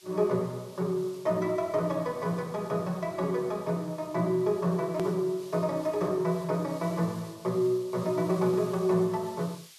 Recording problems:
hiss; slope +4 dB per octave, SNR 22 dB
hard cut with a click; at 5 s

